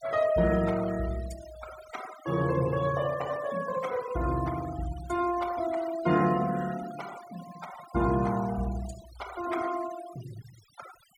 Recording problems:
denoising artefacts; signal-to-artefact ratio 18 dB

